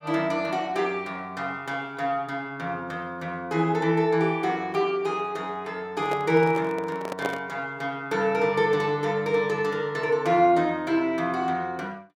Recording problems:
handling noise; from 6 to 7.5 s; peak 0 dB vs average level

